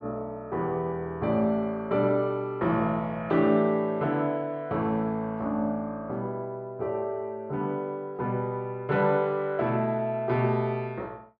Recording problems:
none

